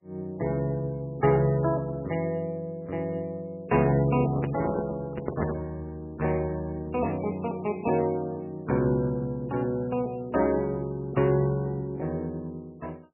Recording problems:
codec artefacts; MP3, log-spectral distance 2 dB, nothing above 2.6 kHz
microphone handling noise; from 4 to 5.5 s; peak +2 dB vs average level

